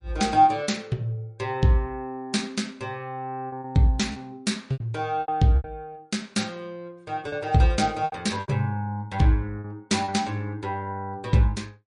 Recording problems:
lossy codec; MP3, log-spectral distance 2 dB, nothing above 10.4 kHz
lost packets; 6% of the sound replaced, filled with repeated pitch periods

